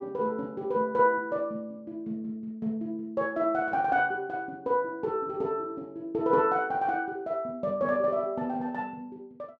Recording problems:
none

